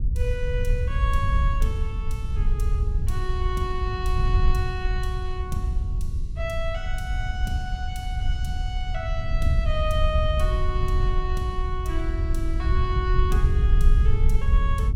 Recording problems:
low-frequency rumble; below 72 Hz, SNR -6 dB

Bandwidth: 17 kHz